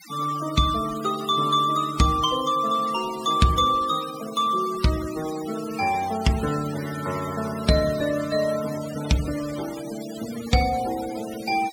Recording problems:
noise reduction artefacts; signal-to-artefact ratio 15 dB

